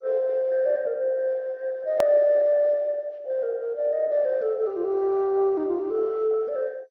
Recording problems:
lossy codec; MP2, log-spectral distance 2 dB, nothing above 18.3 kHz
hard cut with a click; at 2 s

